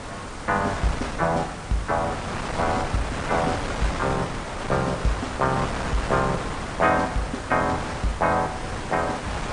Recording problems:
codec artefacts; MP3, log-spectral distance 6 dB, nothing above 9 kHz
background hiss; slope +2 dB per octave, SNR 20 dB
wind noise; below 1.5 kHz, SNR 5 dB

